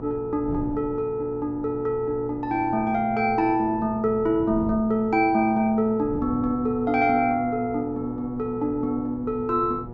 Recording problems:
treble missing; nothing above 8 kHz
hum; 60 Hz, harmonics up to 1.3 kHz, SNR 15 dB
wind noise; below 280 Hz, SNR 17 dB

